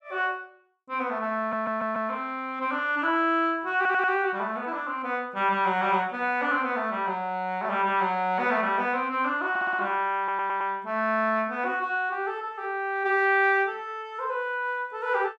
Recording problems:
audio stuttering; 4 times, first at 1.5 s

